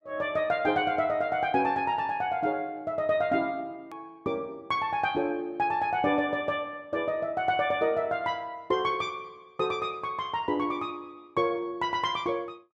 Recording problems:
hard cut with a click; at 4 s

